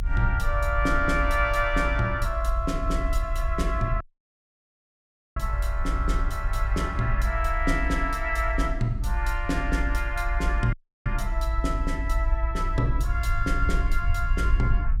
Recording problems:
rumble; below 54 Hz, SNR 1 dB
audio cutting out; at 4 s for 1.5 s and at 11 s

